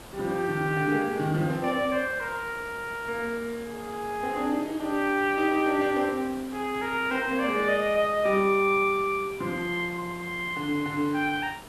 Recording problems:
hiss; slope -5 dB per octave, SNR 18 dB

